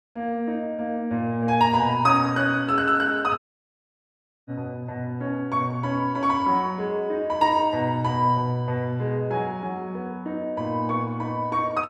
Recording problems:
dropout; at 3.5 s for 1 s

